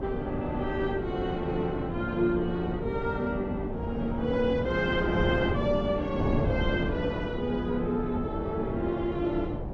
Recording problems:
wind noise; below 410 Hz, SNR 4 dB

